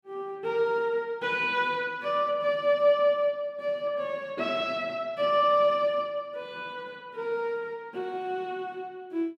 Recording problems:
none

